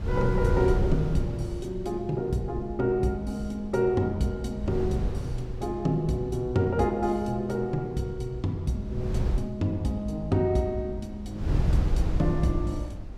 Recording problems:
wind on the microphone; below 110 Hz, SNR 4 dB

